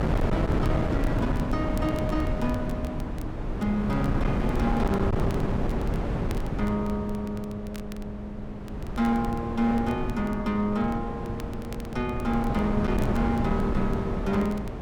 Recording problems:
distorted audio; hard clipping, signal-to-distortion ratio 11 dB
wind noise; below 310 Hz, SNR 1 dB
crackle; vinyl, SNR 23 dB

